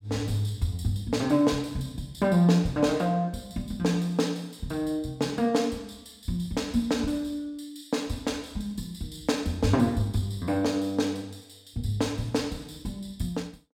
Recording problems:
none

